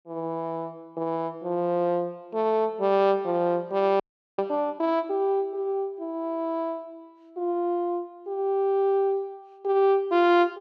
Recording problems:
frozen audio; at 4 s

